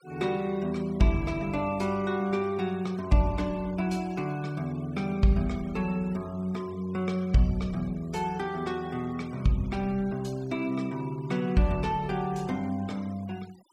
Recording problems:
noise reduction artefacts; signal-to-artefact ratio 24 dB

